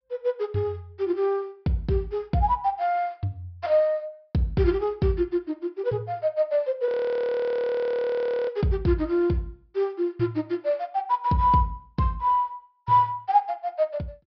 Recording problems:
treble cut off; nothing above 5.5 kHz
frozen audio; at 7 s for 1.5 s

